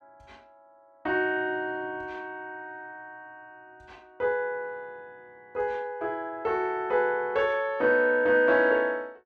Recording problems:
none

